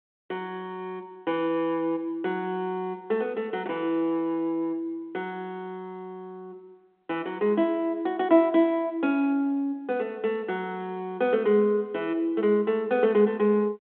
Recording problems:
phone line; 240 Hz to 3.6 kHz, G.726

